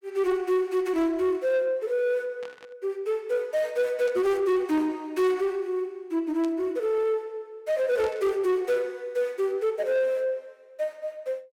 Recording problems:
distortion; soft clipping, signal-to-distortion ratio 11 dB
burst of static; 4 times, first at 2.5 s; peak -14 dB vs average level

